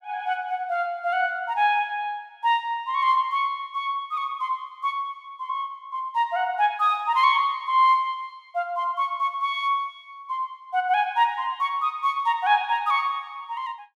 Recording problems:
none

